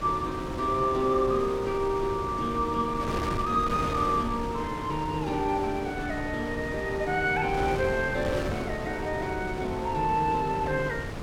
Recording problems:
wind noise; below 680 Hz, SNR 7 dB

